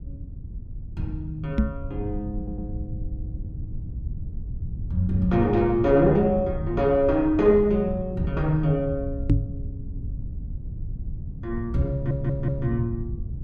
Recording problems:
rumble; below 110 Hz, SNR 10 dB
knock on the microphone; at 1.5 s and at 9.5 s; peak +7 dB vs average level
stutter; at 2.5 s and at 12 s

